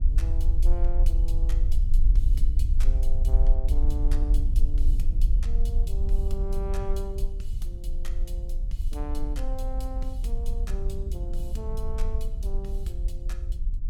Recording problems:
low-frequency rumble; below 48 Hz, strongest tone 24 Hz, SNR -12 dB
wind noise; below 82 Hz, SNR 0 dB

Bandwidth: 17 kHz